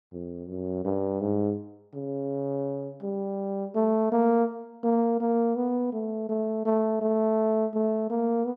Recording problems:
none

